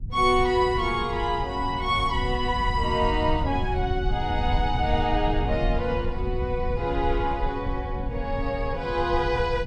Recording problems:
rumble; below 96 Hz, SNR 6 dB

